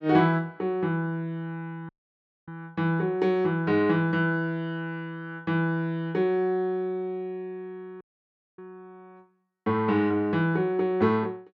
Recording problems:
audio cutting out; at 2 s for 0.5 s and at 8 s for 0.5 s

